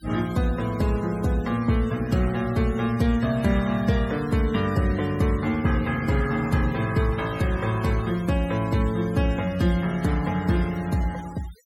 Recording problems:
denoising artefacts; signal-to-artefact ratio 19 dB

